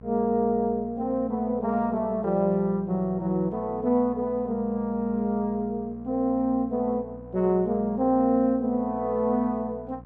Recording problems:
mains hum; 60 Hz, harmonics up to 1.1 kHz, SNR 20 dB

